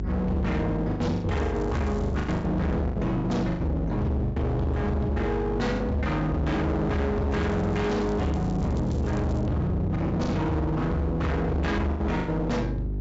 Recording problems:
low-pass filter; nothing above 7.6 kHz
distorted audio; hard clipping, signal-to-distortion ratio 6 dB
electrical hum; 50 Hz, harmonics up to 400 Hz, SNR 6 dB
lost packets; 8% of the sound replaced, filled with the last packet
crackling; from 1.5 to 2.5 s and from 7.5 to 9.5 s; loose cable, SNR 27 dB

